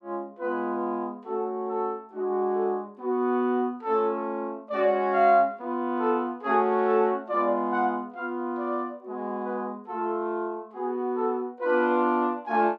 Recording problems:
none

